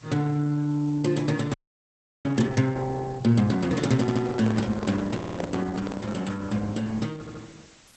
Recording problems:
codec artefacts; Opus, log-spectral distance 6 dB, nothing above 8.2 kHz
background hiss; slope -1 dB per octave, SNR 26 dB
audio freezing; at 1.5 s for 0.5 s
microphone handling noise; from 3.5 to 6 s; peak -2 dB vs average level
audio stuttering; at 4 s, at 5 s and at 7 s

